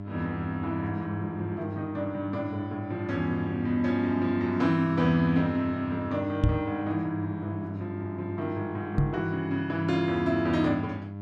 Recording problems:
hum; 50 Hz, harmonics up to 1 kHz, SNR 9 dB
knock on the microphone; at 6.5 s and at 9 s; peak +8 dB vs average level

